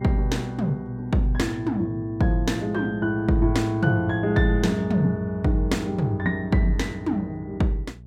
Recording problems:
mains hum; 60 Hz, harmonics up to 480 Hz, SNR 21 dB

